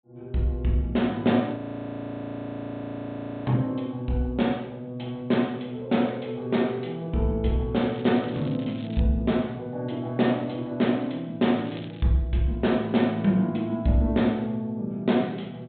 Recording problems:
treble cut off; nothing above 4 kHz
frozen audio; at 1.5 s for 2 s
crackling; from 8 to 9 s and at 11 s; loose cable, SNR 22 dB

